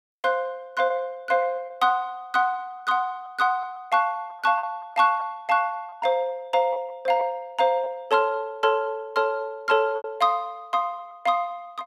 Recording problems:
lost packets; 5% of the sound replaced, filled with repeated pitch periods

